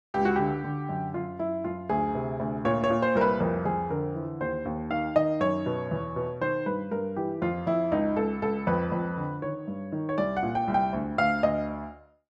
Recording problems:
none

